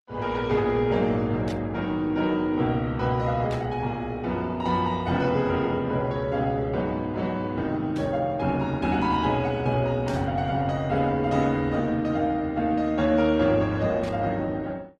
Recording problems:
lossy codec; Opus, log-spectral distance 2 dB
burst of static; 5 times, first at 1.5 s; peak -11 dB vs average level

